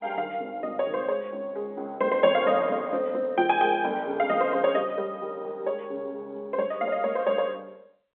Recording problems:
phone line; 240 Hz to 3.8 kHz, G.711

